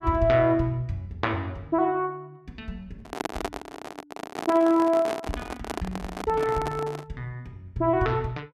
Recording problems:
handling noise; from 3 to 7 s; peak 0 dB vs average level

